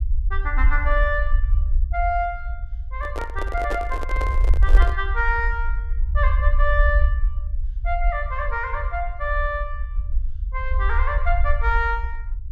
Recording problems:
rumble; below 54 Hz, SNR -2 dB
microphone handling noise; from 3 to 5 s; peak 0 dB vs average level

